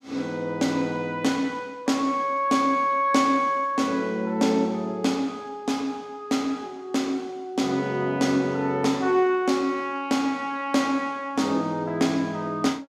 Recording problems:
none

